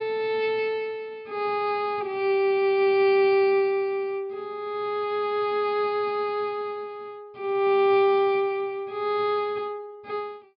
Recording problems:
low-pass filter; nothing above 5.5 kHz

